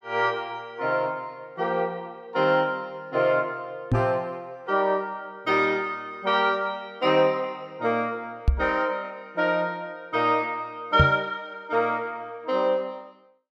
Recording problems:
knock on the microphone; at 4 s, at 8.5 s and at 11 s; peak +8 dB vs average level

